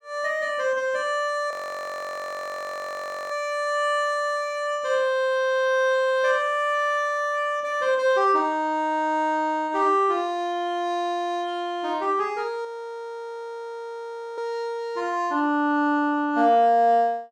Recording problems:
frozen audio; at 1.5 s for 2 s and at 13 s for 1.5 s

